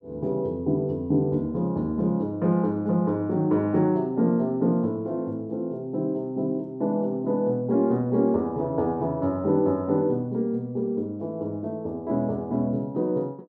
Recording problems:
none

